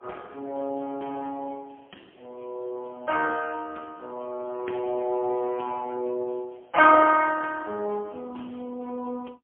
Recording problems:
phone line; 220 Hz to 2.6 kHz, AMR-NB, then MP3

